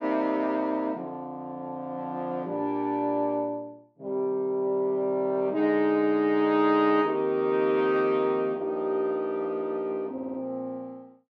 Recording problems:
stutter; at 10 s

